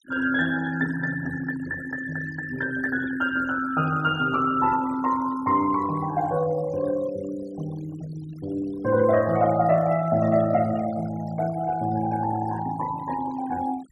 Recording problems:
denoising artefacts; signal-to-artefact ratio 18 dB

